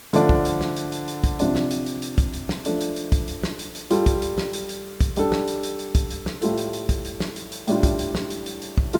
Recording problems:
hiss; slope -2 dB per octave, SNR 18 dB

